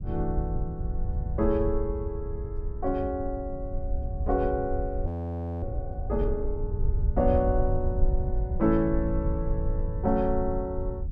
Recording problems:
rumble; below 82 Hz, SNR 2 dB
frozen audio; at 5 s for 0.5 s

